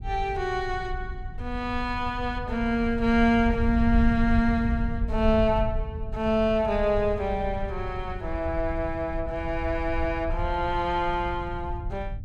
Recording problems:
rumble; below 78 Hz, SNR 7 dB

